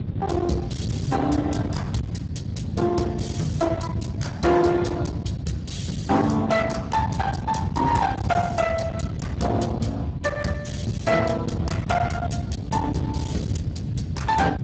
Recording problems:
lossy codec; Speex, log-spectral distance 4 dB, nothing above 7.8 kHz
distortion; hard clipping, uneven, signal-to-distortion ratio 7 dB
low-frequency rumble; below 300 Hz, SNR 4 dB

